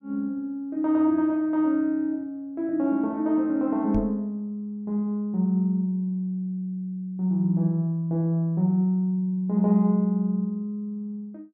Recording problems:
knock on the microphone; at 4 s; peak -3 dB vs average level

